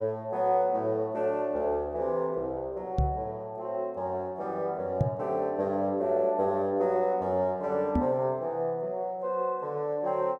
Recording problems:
microphone bump; at 3 s, at 5 s and at 8 s; peak +7 dB vs average level

